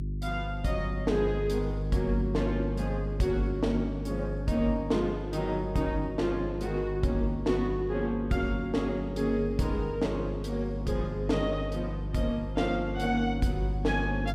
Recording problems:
hum; 50 Hz, harmonics up to 400 Hz, SNR 5 dB

